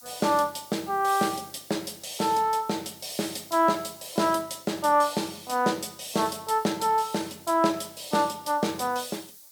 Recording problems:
hiss; SNR 21 dB

